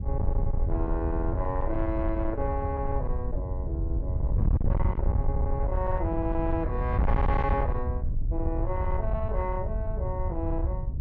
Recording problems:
distortion; soft clipping, signal-to-distortion ratio 7 dB
wind noise; below 90 Hz, SNR -2 dB

